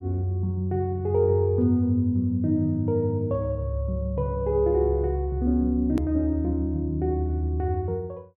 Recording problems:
hard cut with a click; at 6 s

